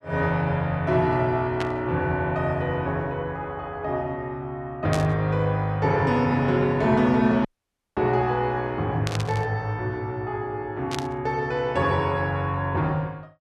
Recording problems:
static burst; 4 times, first at 1.5 s; peak -3 dB vs average level
audio cutting out; at 7.5 s for 0.5 s

